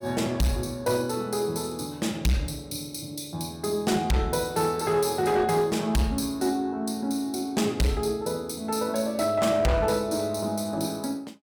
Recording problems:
distortion; hard clipping, signal-to-distortion ratio 10 dB

